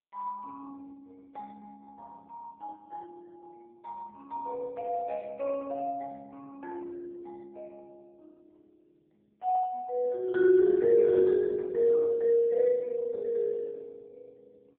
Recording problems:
phone line; 300 Hz to 3.3 kHz, AMR-NB

